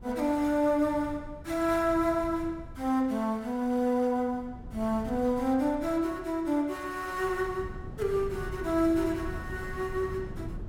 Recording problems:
wind on the microphone; below 160 Hz, SNR 14 dB

